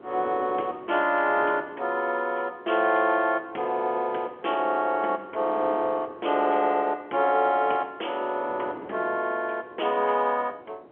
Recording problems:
telephone audio; 280 Hz to 3.3 kHz, G.711
wind on the microphone; below 640 Hz, SNR 20 dB

